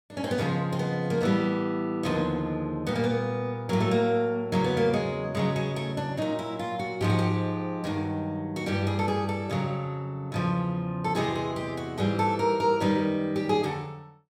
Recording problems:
none

